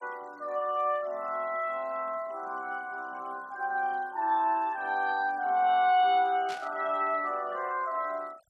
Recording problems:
denoising artefacts; signal-to-artefact ratio 26 dB
burst of static; at 6.5 s; peak -9 dB vs average level

